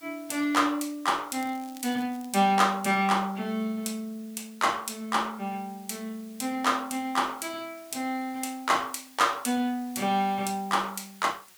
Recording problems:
background hiss; slope +2 dB per octave, SNR 24 dB
crackling; at 1.5 s; loose cable, SNR 22 dB

